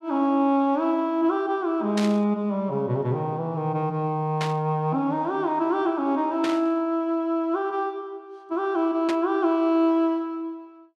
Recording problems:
static burst; 4 times, first at 2 s; peak -3 dB vs average level

